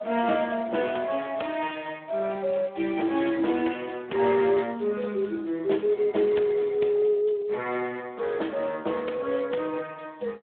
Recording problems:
telephone audio; 220 Hz to 3.5 kHz, Speex

